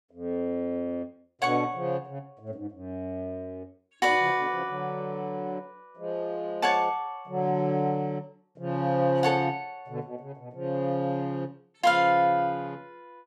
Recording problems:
none

